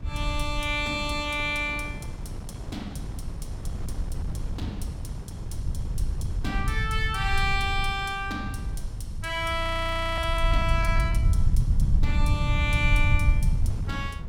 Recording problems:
rumble; below 90 Hz, SNR 1 dB
wind noise; below 320 Hz, SNR 14 dB
frozen audio; at 9.5 s for 0.5 s

